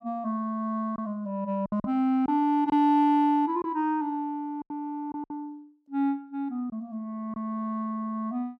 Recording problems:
packet loss; 5% of the sound replaced, filled with silence

